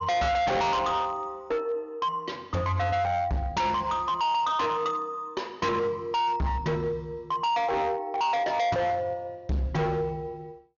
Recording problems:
treble cut off; nothing above 6.8 kHz
distortion; hard clipping, signal-to-distortion ratio 6 dB

